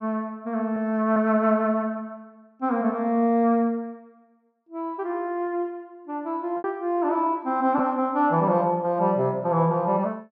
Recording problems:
packet loss; 1.3% of the sound replaced, filled with repeated pitch periods

